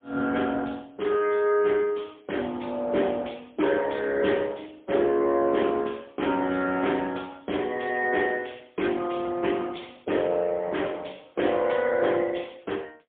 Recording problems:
phone line; 220 Hz to 3.6 kHz, AMR-NB, then MP3

